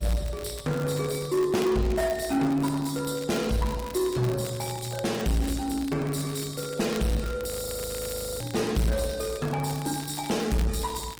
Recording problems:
lossy compression; Opus, log-spectral distance 5 dB, nothing above 19 kHz
distorted audio; soft clipping, signal-to-distortion ratio 11 dB
crackling; vinyl, SNR 17 dB
frozen audio; at 7.5 s for 1 s

